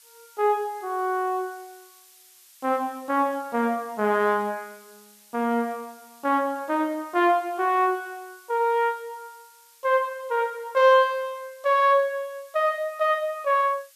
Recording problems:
background hiss; slope +5 dB per octave, SNR 27 dB

